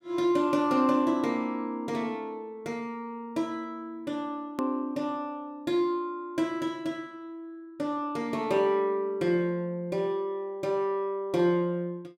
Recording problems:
hard cut with a click; at 4.5 s

